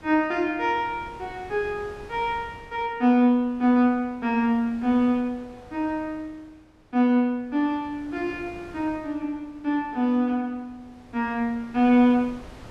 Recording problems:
wind noise; below 850 Hz, SNR 23 dB

